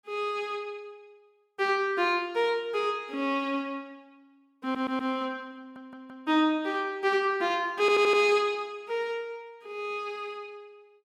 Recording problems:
audio stuttering; at 4.5 s, at 5.5 s and at 8 s

